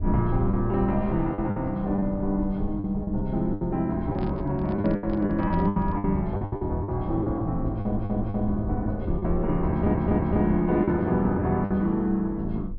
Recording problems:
treble missing; nothing above 5.5 kHz
low-frequency rumble; below 78 Hz, SNR 11 dB
lost packets; 10% of the sound replaced, filled with the last packet
handling noise; from 4 to 6 s; peak -10 dB vs average level
audio stuttering; at 7.5 s and at 9.5 s

